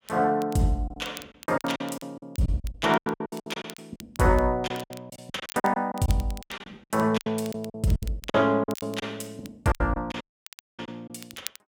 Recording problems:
crackling; vinyl, SNR 19 dB
lost packets; 17% of the sound replaced, filled with silence
audio cutting out; at 10 s for 0.5 s

